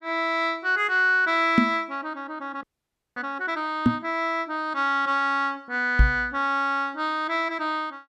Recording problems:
microphone thump; at 1.5 s, at 4 s and at 6 s; peak +9 dB vs average level
frozen audio; at 2.5 s for 0.5 s

